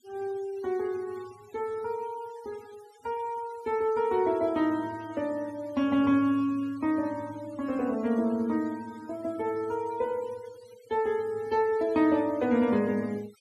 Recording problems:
noise reduction artefacts; signal-to-artefact ratio 23 dB

